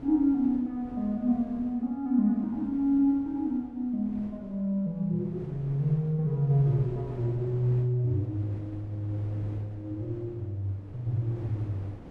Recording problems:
wind on the microphone; below 390 Hz, SNR 18 dB

